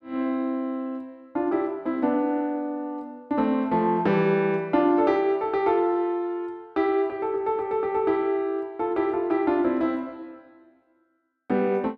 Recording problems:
none

